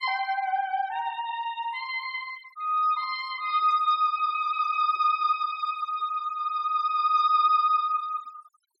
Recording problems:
denoising artefacts; signal-to-artefact ratio 22 dB

